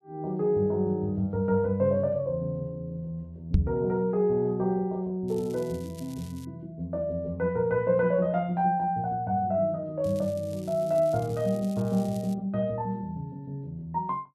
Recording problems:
microphone bump; at 3.5 s; peak +9 dB vs average level
crackle; from 5.5 to 6.5 s and from 10 to 12 s; loose cable, SNR 23 dB

